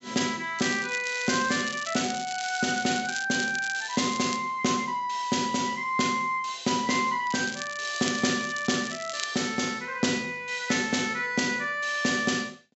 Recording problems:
treble cut off; nothing above 7.6 kHz
crackling; from 0.5 to 3.5 s, from 3.5 to 4.5 s and from 7 to 9 s; loose cable, SNR 11 dB

